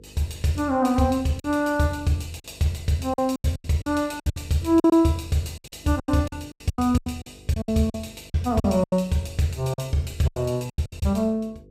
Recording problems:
hum; 50 Hz, harmonics up to 500 Hz, SNR 26 dB
packet loss; 14% of the sound replaced, filled with silence

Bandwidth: 15.5 kHz